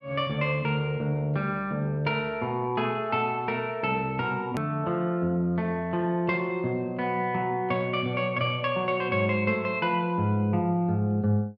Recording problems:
hard cut with a click; at 4.5 s

